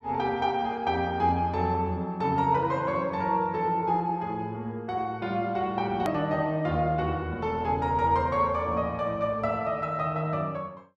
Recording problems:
hard cut with a click; at 6 s

